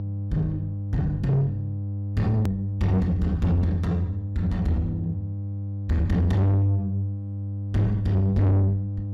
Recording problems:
distortion; soft clipping, signal-to-distortion ratio 6 dB
hum; 50 Hz, harmonics up to 500 Hz, SNR 7 dB
click at an edit; at 2.5 s

